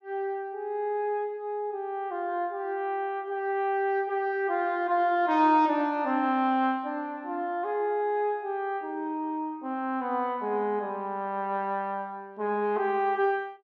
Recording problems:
none

